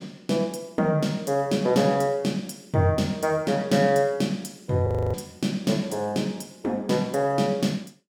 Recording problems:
audio freezing; at 5 s

